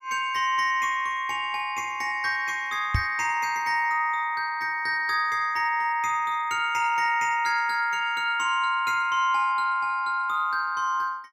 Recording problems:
knock on the microphone; at 3 s; peak +3 dB vs average level

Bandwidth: 18 kHz